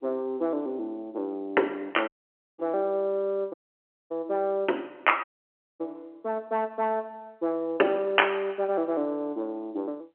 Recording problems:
phone line; 260 Hz to 3.2 kHz, G.711
audio cutting out; at 2 s for 0.5 s, at 3.5 s for 0.5 s and at 5 s for 0.5 s

